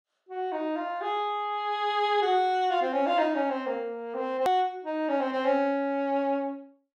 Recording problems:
edit click; at 4.5 s

